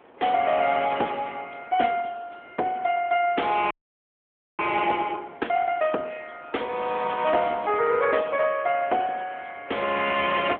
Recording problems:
phone line; 300 Hz to 3.4 kHz, AMR-NB
wind noise; below 1.1 kHz, SNR 24 dB
audio freezing; at 3.5 s for 1 s

